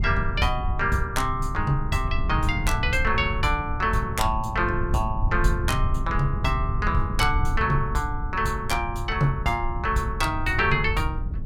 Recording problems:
low-frequency rumble; below 94 Hz, SNR 4 dB

